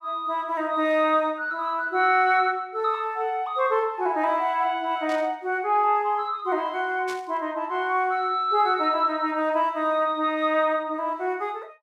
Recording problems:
static burst; at 5 s and at 7 s; peak -10 dB vs average level

